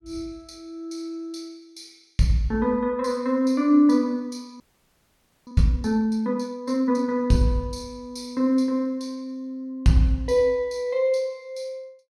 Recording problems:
audio freezing; at 4.5 s for 1 s

